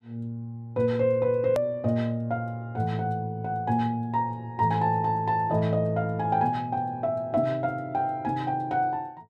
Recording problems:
edit click; at 1.5 s

